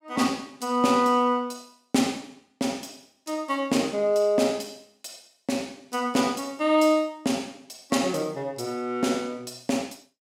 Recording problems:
none

